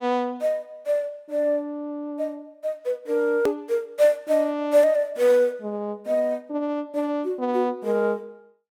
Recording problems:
edit click; at 3.5 s

